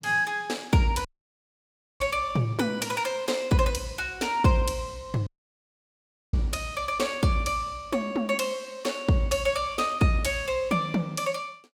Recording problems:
audio cutting out; at 1 s for 1 s and at 5.5 s for 1 s

